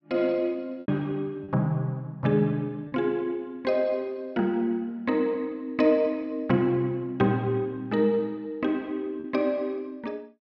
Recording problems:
lost packets; 2% of the sound replaced, filled with repeated pitch periods

